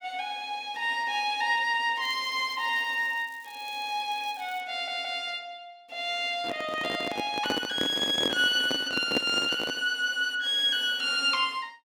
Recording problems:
crackle; from 2 to 4.5 s; loose cable, SNR 26 dB
audio stuttering; at 4.5 s
handling noise; from 6.5 to 10 s; peak +2 dB vs average level

